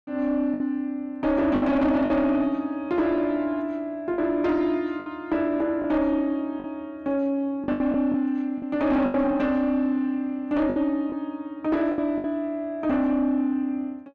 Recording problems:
distortion; soft clipping, signal-to-distortion ratio 12 dB
packet loss; 6% of the sound replaced, filled with the last packet

